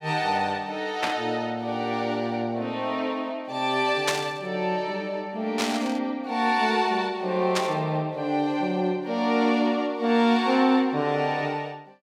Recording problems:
burst of static; 4 times, first at 1 s; peak +4 dB vs average level

